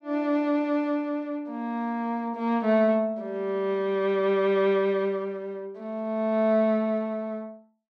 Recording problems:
none

